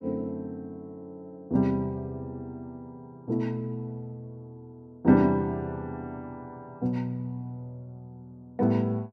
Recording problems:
none

